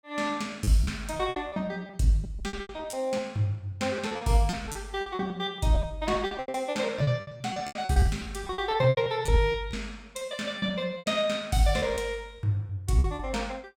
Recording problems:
lost packets; 16% of the sound replaced, filled with repeated pitch periods

